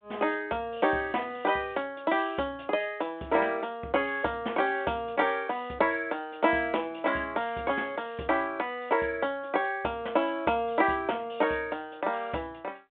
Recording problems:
telephone audio; 190 Hz to 3.5 kHz, G.726

